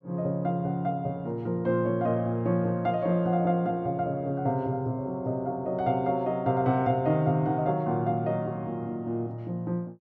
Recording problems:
none

